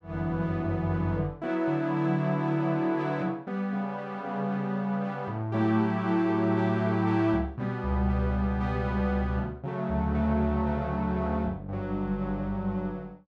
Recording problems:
none

